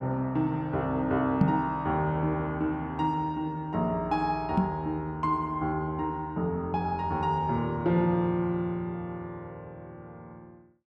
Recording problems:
microphone bump; at 1.5 s and at 4.5 s; peak +10 dB vs average level

